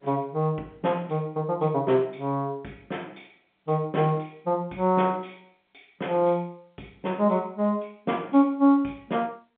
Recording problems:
telephone audio; 220 Hz to 3.3 kHz, G.711

